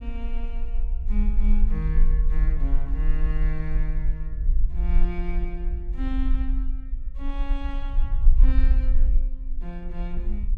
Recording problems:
low-frequency rumble; below 42 Hz, strongest tone 20 Hz, SNR -10 dB

